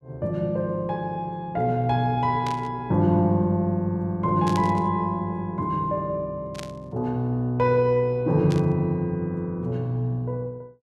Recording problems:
burst of static; 4 times, first at 2.5 s; peak -7 dB vs average level

